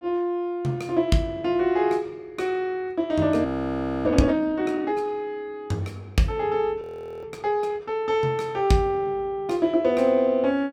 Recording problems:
audio freezing; at 3.5 s for 0.5 s and at 7 s

